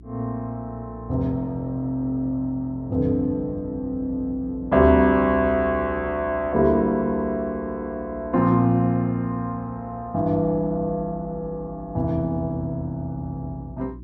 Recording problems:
hum; 60 Hz, harmonics up to 360 Hz, SNR 19 dB

